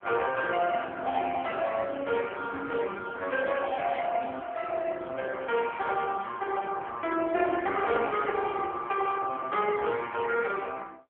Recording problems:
phone line; 300 Hz to 2.3 kHz, AMR-NB

